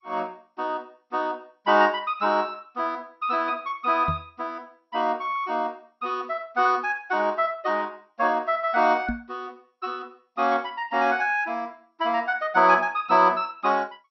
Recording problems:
lossy compression; MP2, log-spectral distance 2 dB, nothing above 5.8 kHz
microphone bump; at 4 s and at 9 s; peak -1 dB vs average level

